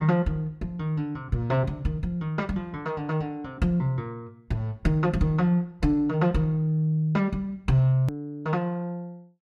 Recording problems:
edit click; at 8 s

